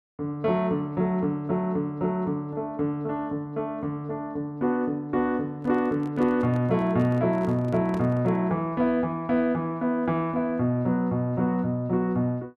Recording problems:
handling noise; from 5.5 to 8.5 s; peak -7 dB vs average level

